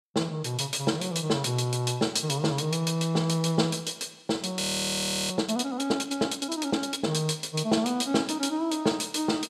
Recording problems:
audio freezing; at 4.5 s for 0.5 s

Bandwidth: 14.5 kHz